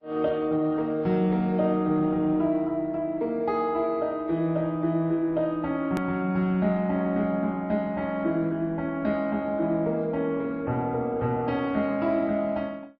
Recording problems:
lossy compression; Opus, then MP3, log-spectral distance 2 dB, nothing above 13.1 kHz
click at an edit; at 6 s

